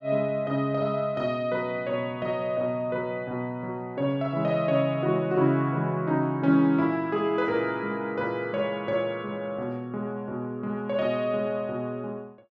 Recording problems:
none

